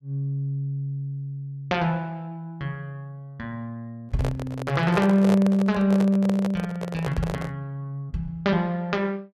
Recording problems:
handling noise; from 4 to 7.5 s; peak 0 dB vs average level

